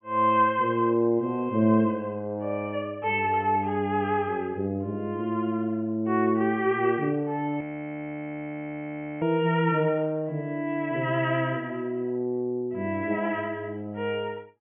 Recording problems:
treble missing; nothing above 3.2 kHz
audio freezing; at 7.5 s for 1.5 s

